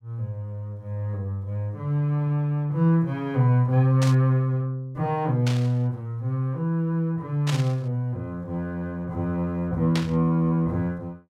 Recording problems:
burst of static; 4 times, first at 4 s; peak -1 dB vs average level

